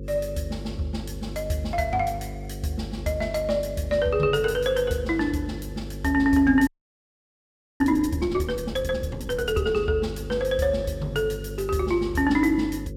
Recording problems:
electrical hum; 50 Hz, harmonics up to 550 Hz, SNR 11 dB
frozen audio; at 6.5 s for 1 s

